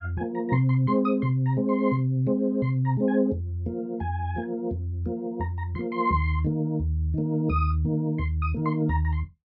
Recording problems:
none

